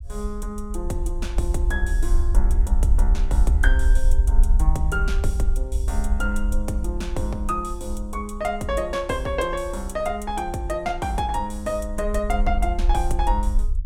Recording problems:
low-frequency rumble; below 56 Hz, SNR -3 dB

